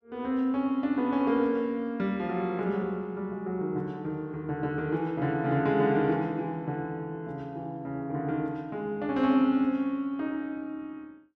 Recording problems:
none

